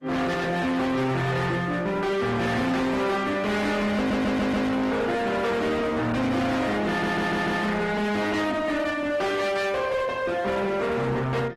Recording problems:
codec artefacts; Opus, log-spectral distance 3 dB, nothing above 13.1 kHz
distorted audio; hard clipping, signal-to-distortion ratio 6 dB
stutter; at 4 s and at 7 s

